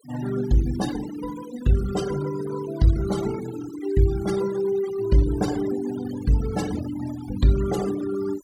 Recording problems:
denoising artefacts; signal-to-artefact ratio 13 dB

